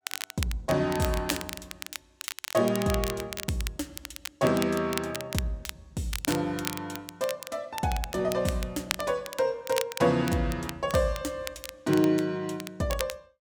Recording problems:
crackle; vinyl, SNR 9 dB

